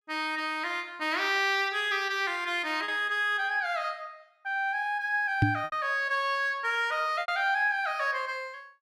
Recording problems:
lost packets; 2% of the sound replaced, filled with repeated pitch periods
knock on the microphone; at 5.5 s; peak +7 dB vs average level

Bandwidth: 15 kHz